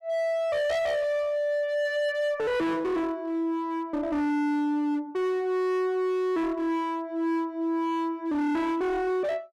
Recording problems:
distorted audio; hard clipping, signal-to-distortion ratio 8 dB

